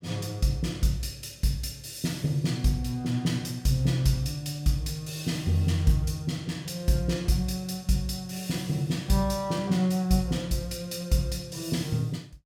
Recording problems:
none

